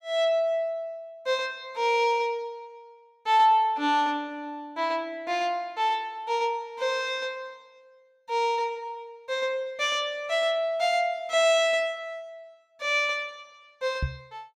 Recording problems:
microphone thump; at 14 s; peak +1 dB vs average level

